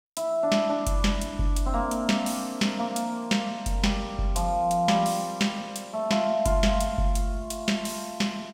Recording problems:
none

